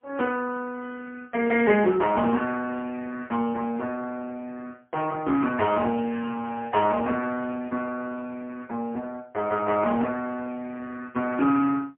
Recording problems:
phone line; 150 Hz to 3.3 kHz, AMR-NB, then MP3

